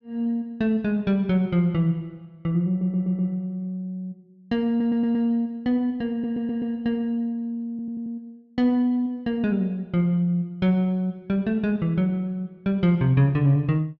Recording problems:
audio stuttering; 4 times, first at 2.5 s

